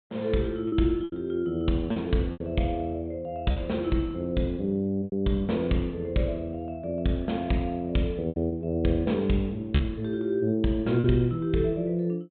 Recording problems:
treble missing; nothing above 4 kHz
lost packets; 5% of the sound replaced, filled with repeated pitch periods

